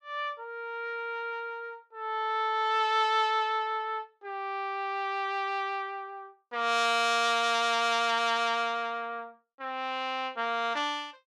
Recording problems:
none

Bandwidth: 14.5 kHz